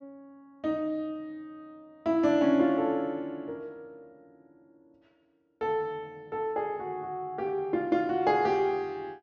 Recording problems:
treble cut off; nothing above 8 kHz

